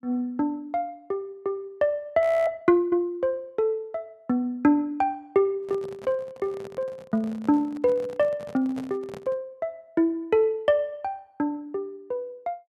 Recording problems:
frozen audio; at 2 s
microphone handling noise; from 5.5 to 9.5 s; peak -10 dB vs average level

